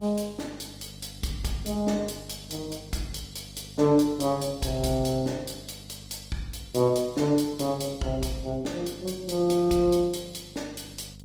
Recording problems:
lossy compression; Opus, log-spectral distance 5 dB
electrical hum; 50 Hz, harmonics up to 700 Hz, SNR 20 dB

